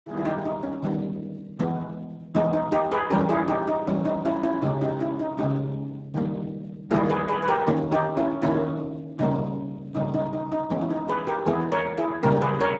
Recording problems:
lossy codec; Speex, log-spectral distance 3 dB

